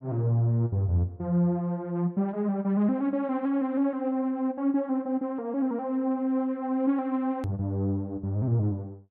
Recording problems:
hard cut with a click; at 7.5 s

